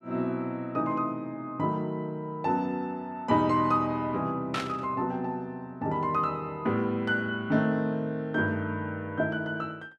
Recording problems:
static burst; at 4.5 s; peak -1 dB vs average level

